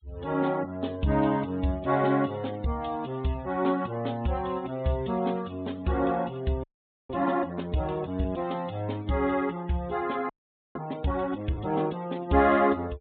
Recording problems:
treble missing; nothing above 4 kHz
noise reduction artefacts; signal-to-artefact ratio 25 dB
audio freezing; at 6.5 s and at 10 s

